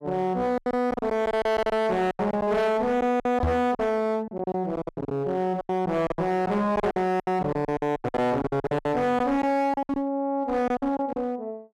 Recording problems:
distortion; hard clipping, uneven, signal-to-distortion ratio 6 dB
lost packets; 16% of the sound replaced, filled with silence
microphone thump; at 3.5 s; peak +4 dB vs average level

